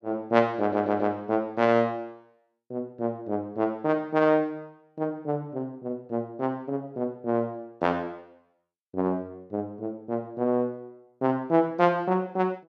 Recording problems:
stutter; at 0.5 s

